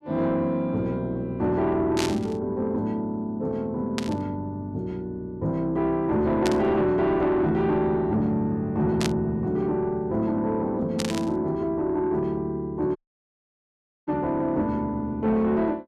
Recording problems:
distortion; soft clipping, signal-to-distortion ratio 12 dB
burst of static; 5 times, first at 2 s; peak +1 dB vs average level
dropout; at 13 s for 1 s

